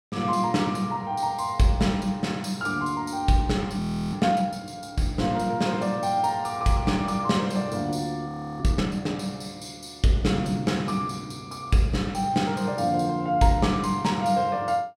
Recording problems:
audio freezing; at 4 s and at 8.5 s

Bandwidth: 16 kHz